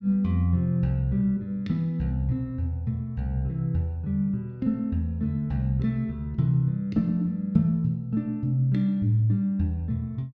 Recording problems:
none

